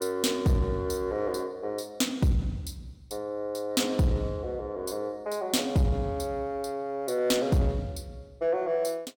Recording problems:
distortion; soft clipping, signal-to-distortion ratio 12 dB

